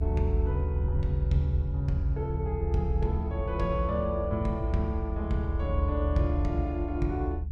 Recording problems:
rumble; below 76 Hz, strongest tone 76 Hz, SNR 1 dB

